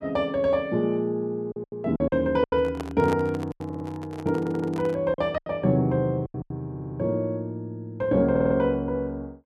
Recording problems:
packet loss; 8% of the sound replaced, filled with silence
microphone handling noise; from 2.5 to 5 s; peak -3 dB vs average level
audio stuttering; 4 times, first at 3.5 s

